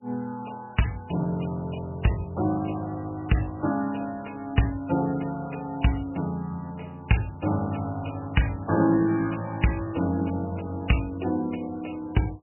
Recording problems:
lossy codec; MP3, log-spectral distance 6 dB, nothing above 2.9 kHz

